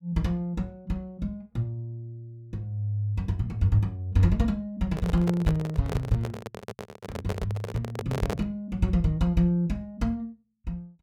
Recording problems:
handling noise; from 5 to 8.5 s; peak +1 dB vs average level

